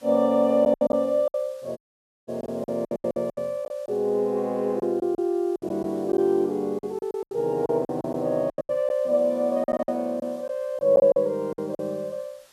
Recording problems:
background hiss; slope 0 dB per octave, SNR 30 dB
lost packets; 13% of the sound replaced, filled with silence
audio cutting out; at 2 s for 0.5 s

